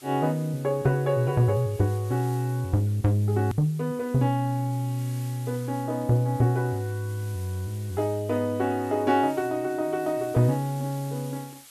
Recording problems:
background hiss; slope +2 dB per octave, SNR 22 dB
hard cut with a click; at 3.5 s

